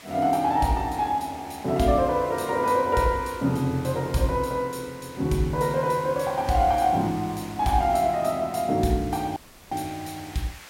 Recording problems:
hiss; SNR 20 dB
dropout; at 9.5 s

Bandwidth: 16 kHz